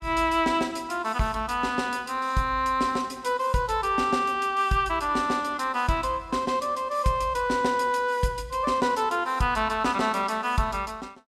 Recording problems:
none

